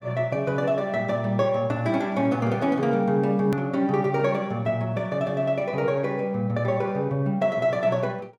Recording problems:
edit click; at 3.5 s

